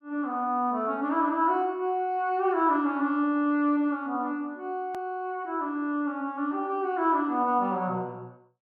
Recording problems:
click at an edit; at 5 s

